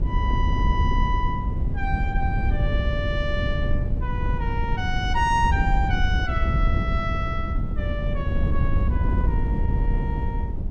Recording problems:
wind noise; below 100 Hz, SNR -4 dB

